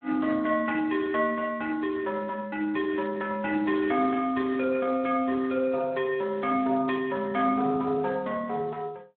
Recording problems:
phone line; 220 Hz to 3.3 kHz, Speex

